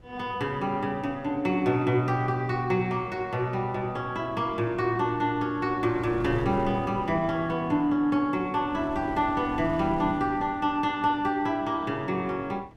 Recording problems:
wind on the microphone; below 320 Hz, SNR 18 dB

